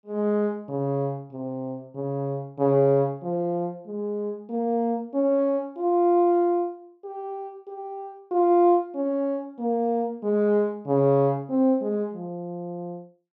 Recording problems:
none

